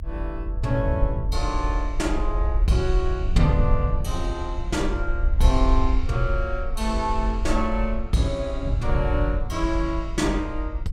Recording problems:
rumble; below 52 Hz, SNR 2 dB
wind noise; below 100 Hz, SNR 3 dB

